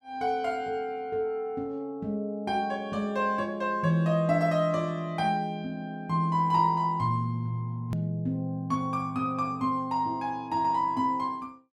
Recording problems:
hard cut with a click; at 8 s

